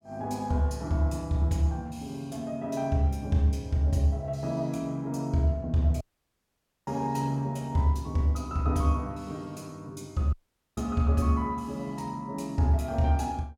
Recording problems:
dropout; at 6 s for 1 s and at 10 s

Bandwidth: 17 kHz